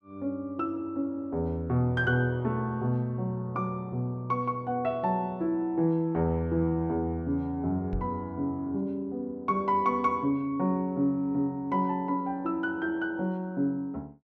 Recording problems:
microphone bump; at 8 s; peak -1 dB vs average level

